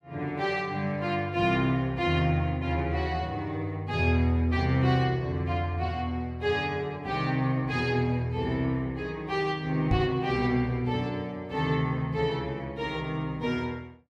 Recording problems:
microphone bump; at 10 s; peak +5 dB vs average level

